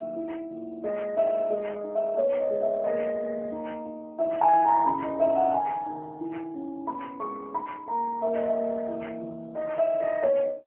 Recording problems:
phone line; 260 Hz to 3 kHz, AMR-NB

